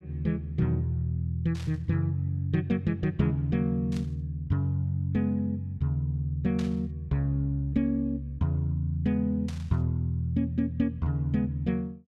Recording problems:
burst of static; 4 times, first at 1.5 s; peak -11 dB vs average level

